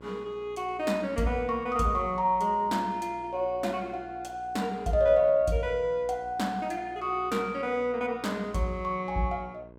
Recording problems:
hum; 60 Hz, harmonics up to 1.1 kHz, SNR 23 dB

